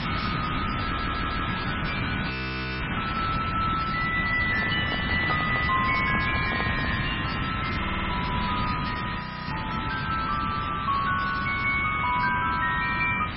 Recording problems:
lossy compression; MP3, log-spectral distance 13 dB, nothing above 4.5 kHz
hiss; SNR 2 dB
stutter; at 1 s and at 8 s
frozen audio; at 2.5 s for 0.5 s and at 9 s
handling noise; from 4.5 to 7 s; peak 0 dB vs average level

